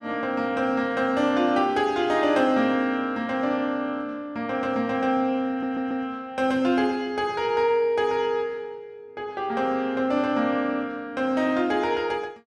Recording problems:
audio stuttering; at 5.5 s

